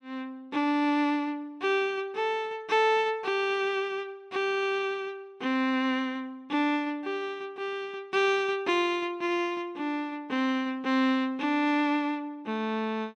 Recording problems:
none

